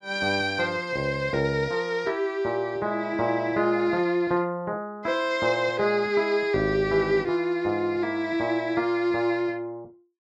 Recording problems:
none

